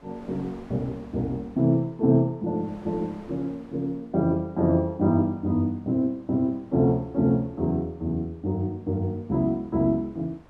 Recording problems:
wind noise; below 930 Hz, SNR 26 dB

